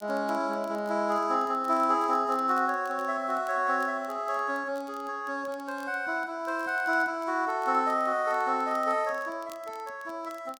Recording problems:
crackle; vinyl, SNR 28 dB

